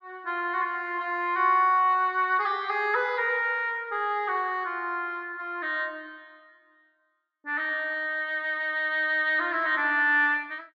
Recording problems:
treble missing; nothing above 8 kHz

